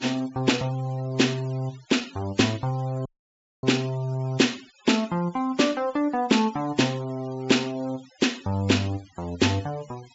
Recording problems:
low-pass filter; nothing above 8 kHz
noise reduction artefacts; signal-to-artefact ratio 21 dB
audio cutting out; at 3 s for 0.5 s

